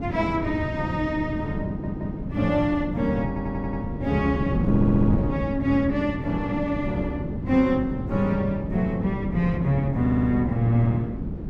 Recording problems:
wind on the microphone; below 270 Hz, SNR 4 dB
audio stuttering; 4 times, first at 1.5 s

